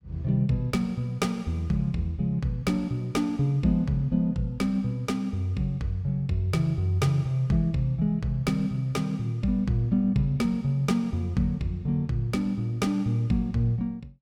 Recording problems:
none

